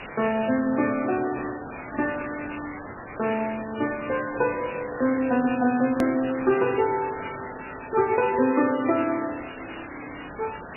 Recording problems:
lossy compression; MP3, log-spectral distance 22 dB, nothing above 2.5 kHz
hiss; SNR 13 dB
click at an edit; at 6 s

